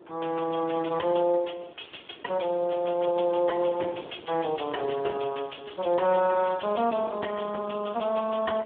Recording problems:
phone line; 260 Hz to 2.9 kHz, Speex
wind on the microphone; below 650 Hz, SNR 21 dB

